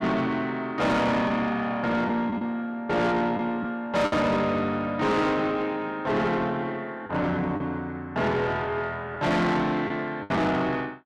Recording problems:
distortion; soft clipping, signal-to-distortion ratio 8 dB
lost packets; 3% of the sound replaced, filled with the last packet

